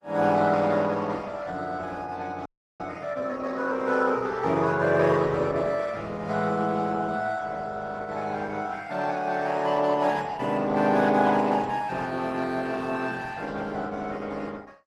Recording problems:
lossy codec; Opus, log-spectral distance 4 dB
audio freezing; at 2.5 s

